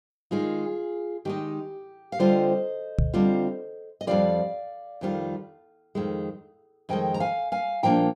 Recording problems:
knock on the microphone; at 3 s; peak +7 dB vs average level

